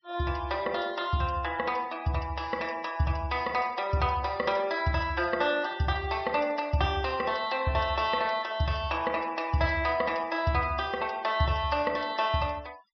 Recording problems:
low-pass filter; nothing above 5.5 kHz
noise reduction artefacts; signal-to-artefact ratio 23 dB

